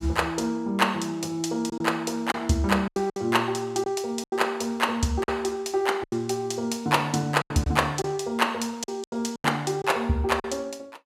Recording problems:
lost packets; 7% of the sound replaced, filled with silence

